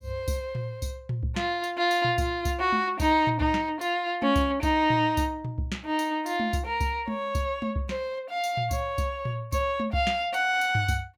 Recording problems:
none

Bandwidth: 18 kHz